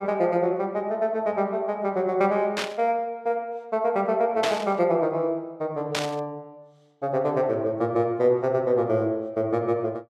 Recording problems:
static burst; at 2.5 s, at 4.5 s and at 6 s; peak +2 dB vs average level

